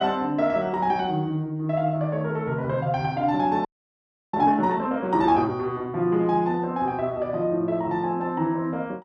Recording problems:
audio freezing; at 3.5 s for 0.5 s

